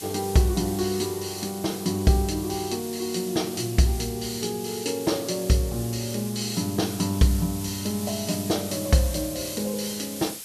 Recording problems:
background hiss; SNR 10 dB

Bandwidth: 13.5 kHz